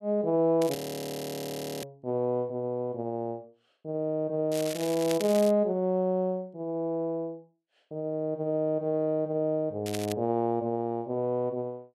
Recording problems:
crackling; from 0.5 to 2 s, from 4.5 to 5.5 s and at 10 s; loose cable, SNR 11 dB
audio freezing; at 1 s for 1 s

